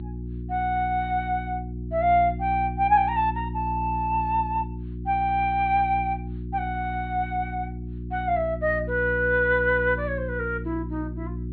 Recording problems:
treble missing; nothing above 4.3 kHz
hum; 60 Hz, harmonics up to 360 Hz, SNR 8 dB

